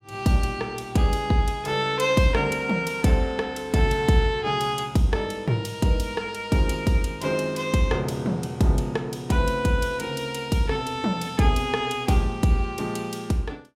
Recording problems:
none

